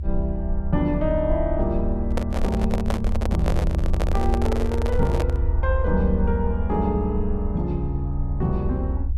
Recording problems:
rumble; below 76 Hz, SNR 0 dB
handling noise; from 2 to 5.5 s; peak +2 dB vs average level

